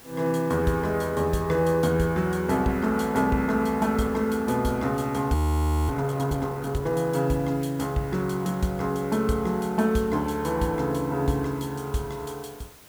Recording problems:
hiss; slope -3 dB per octave, SNR 22 dB
audio freezing; at 5.5 s for 0.5 s

